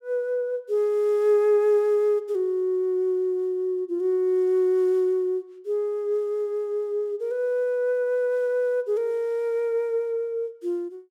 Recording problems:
none

